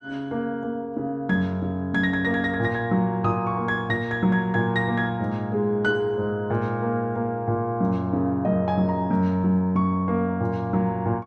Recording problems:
none

